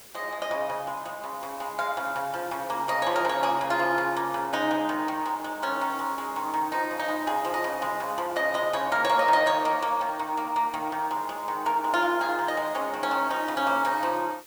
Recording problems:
background hiss; slope -2 dB per octave, SNR 19 dB

